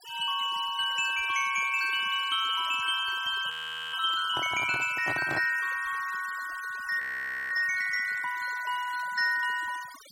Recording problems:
noise reduction artefacts; signal-to-artefact ratio 17 dB
audio freezing; at 3.5 s and at 7 s for 0.5 s
microphone handling noise; from 4.5 to 5.5 s; peak -3 dB vs average level

